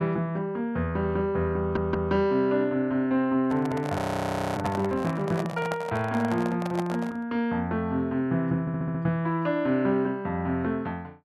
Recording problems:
audio stuttering; at 1.5 s and at 8.5 s
microphone handling noise; from 3.5 to 7.5 s; peak -2 dB vs average level
frozen audio; at 4 s for 0.5 s

